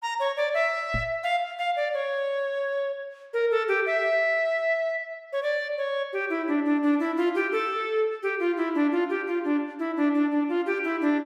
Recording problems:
knock on the microphone; at 1 s; peak -2 dB vs average level

